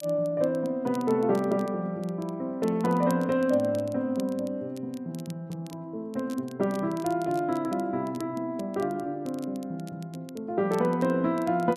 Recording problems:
crackle; vinyl, SNR 23 dB

